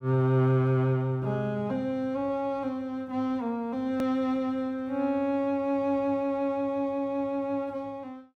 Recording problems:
click at an edit; at 4 s

